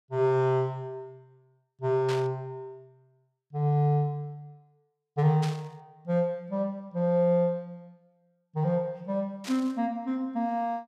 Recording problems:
static burst; at 2 s, at 5.5 s and at 9.5 s; peak -5 dB vs average level

